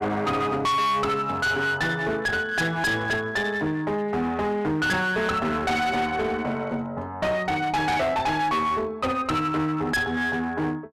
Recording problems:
distorted audio; hard clipping, uneven, signal-to-distortion ratio 7 dB

